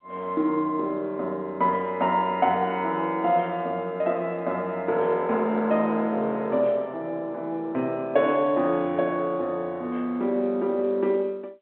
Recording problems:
phone line; 190 Hz to 3.8 kHz, G.711

